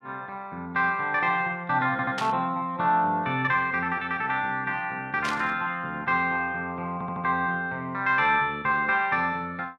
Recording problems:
stutter; at 2 s and at 7 s
static burst; at 2 s and at 5 s; peak -3 dB vs average level

